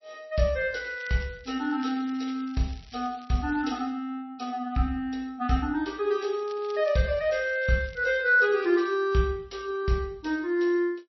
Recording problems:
codec artefacts; MP3, log-spectral distance 3 dB, nothing above 5.7 kHz
crackling; from 1 to 4 s and from 6 to 9 s; loose cable, SNR 24 dB

